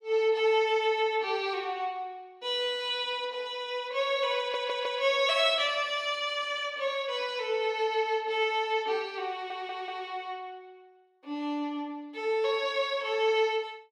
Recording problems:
stutter; at 4.5 s and at 9.5 s

